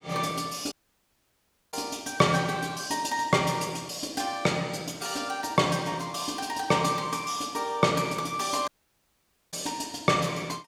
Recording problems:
dropout; at 0.5 s for 1 s and at 8.5 s for 1 s

